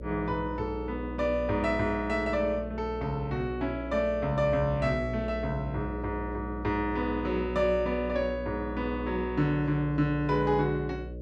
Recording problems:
hum; 60 Hz, harmonics up to 600 Hz, SNR 10 dB

